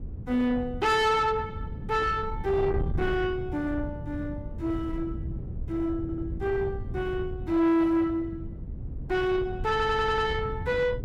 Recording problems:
distortion; soft clipping, signal-to-distortion ratio 11 dB
wind on the microphone; below 150 Hz, SNR 9 dB
audio stuttering; at 6 s and at 9.5 s

